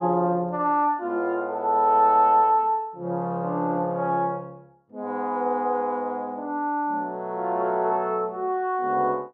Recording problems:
none

